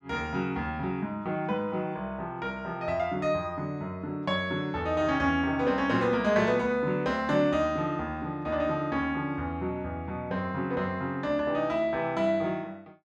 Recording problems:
none

